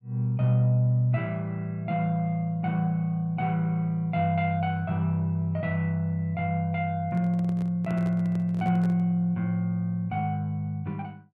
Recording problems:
microphone handling noise; from 7 to 9 s; peak -12 dB vs average level

